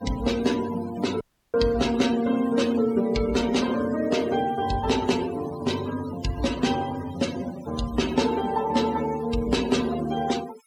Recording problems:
noise reduction artefacts; signal-to-artefact ratio 14 dB
dropout; at 1 s

